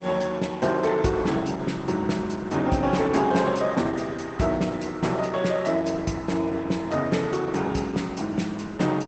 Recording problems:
lossy compression; Opus, log-spectral distance 4 dB, nothing above 8 kHz

